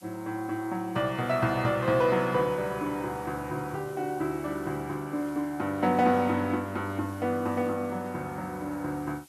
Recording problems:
hiss; SNR 25 dB

